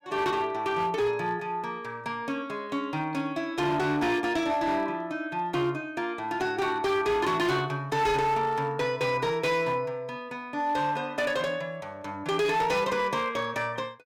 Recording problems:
distortion; hard clipping, signal-to-distortion ratio 11 dB

